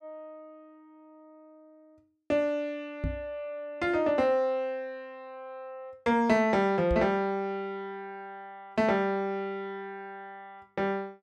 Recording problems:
microphone thump; at 3 s and at 7 s; peak +1 dB vs average level

